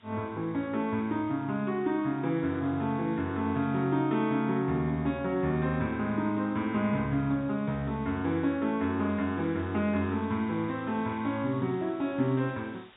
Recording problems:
treble missing; nothing above 4 kHz
background hiss; SNR 27 dB

